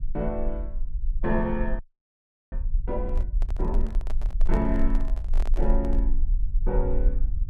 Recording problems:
low-frequency rumble; below 40 Hz, strongest tone 20 Hz, SNR -2 dB
frozen audio; at 2 s for 0.5 s
handling noise; from 3 to 6 s; peak -4 dB vs average level

